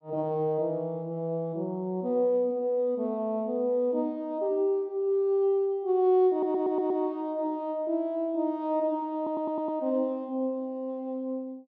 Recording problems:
audio stuttering; at 6.5 s and at 9 s

